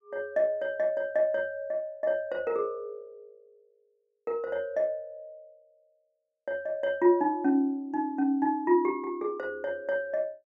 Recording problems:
none

